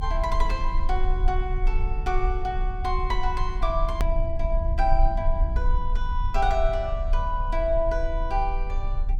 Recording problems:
low-frequency rumble; below 46 Hz, strongest tone 30 Hz, SNR 0 dB
edit click; at 4 s

